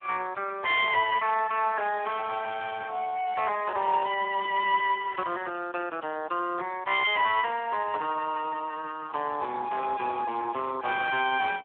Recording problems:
telephone audio; 320 Hz to 2.9 kHz, Speex
burst of static; at 8 s; peak -18 dB vs average level

